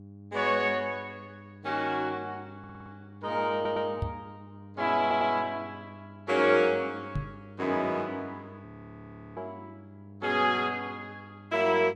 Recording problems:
hum; 50 Hz, harmonics up to 700 Hz, SNR 20 dB
audio stuttering; at 2.5 s, at 3.5 s and at 5 s
microphone thump; at 4 s and at 7 s; peak 0 dB vs average level
frozen audio; at 8.5 s for 0.5 s

